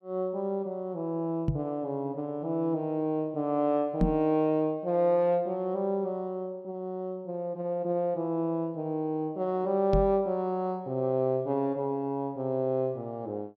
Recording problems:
microphone thump; at 1.5 s, at 4 s and at 10 s; peak +7 dB vs average level

